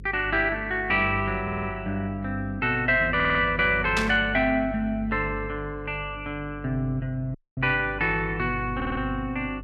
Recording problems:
hum; 50 Hz, harmonics up to 450 Hz, SNR 13 dB
stutter; at 1.5 s, at 3 s and at 9 s
static burst; at 4 s; peak +1 dB vs average level
audio cutting out; at 7.5 s

